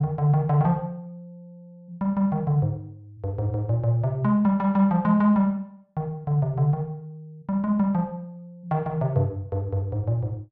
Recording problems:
none

